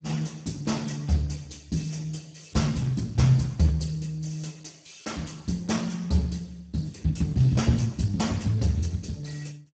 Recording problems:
lossy compression; Speex, log-spectral distance 5 dB, nothing above 7.6 kHz

